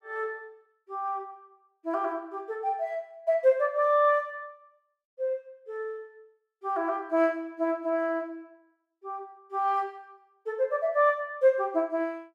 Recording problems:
none

